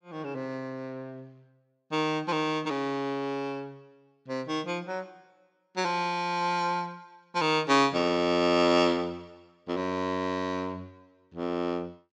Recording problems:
none

